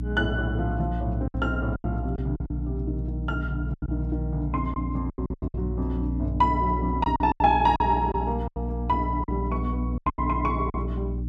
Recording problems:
electrical hum; 60 Hz, harmonics up to 300 Hz, SNR 3 dB
packet loss; 10% of the sound replaced, filled with silence

